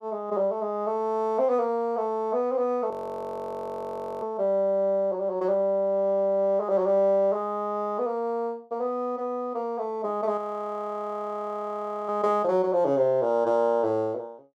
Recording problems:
audio freezing; at 3 s for 1.5 s and at 10 s for 1.5 s

